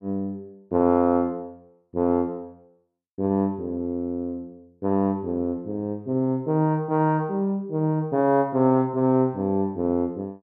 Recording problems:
none

